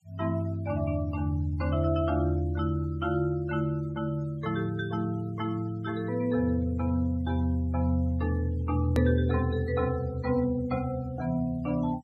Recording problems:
denoising artefacts; signal-to-artefact ratio 26 dB
click at an edit; at 9 s

